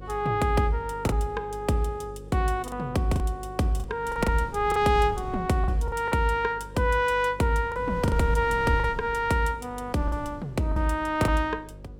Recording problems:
hum; 50 Hz, harmonics up to 550 Hz, SNR 18 dB
wind on the microphone; below 150 Hz, SNR 13 dB
lost packets; 6% of the sound replaced, filled with the last packet

